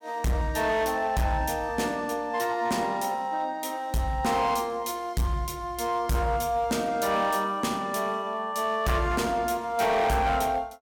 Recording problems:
distorted audio; hard clipping, signal-to-distortion ratio 10 dB

